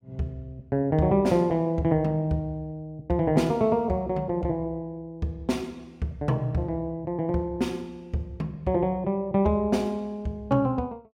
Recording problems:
none

